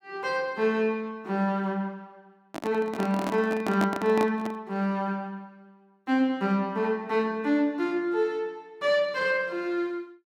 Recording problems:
microphone handling noise; from 2.5 to 4.5 s; peak +1 dB vs average level

